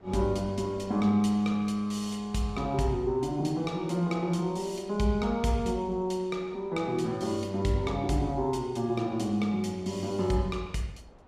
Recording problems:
wind noise; below 740 Hz, SNR 25 dB

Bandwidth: 15 kHz